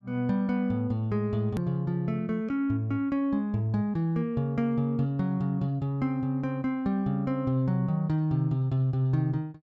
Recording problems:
click at an edit; at 1.5 s

